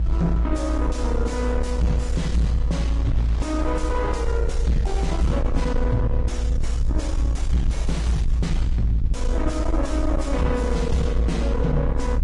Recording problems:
codec artefacts; AAC, then Vorbis, log-spectral distance 2 dB, nothing above 10.1 kHz
distortion; soft clipping, signal-to-distortion ratio 6 dB
rumble; below 60 Hz, strongest tone 56 Hz, SNR -1 dB
wind noise; below 1.9 kHz, SNR 22 dB

